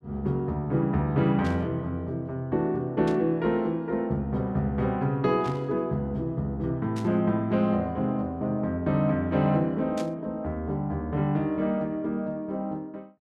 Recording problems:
burst of static; 5 times, first at 1.5 s; peak -10 dB vs average level

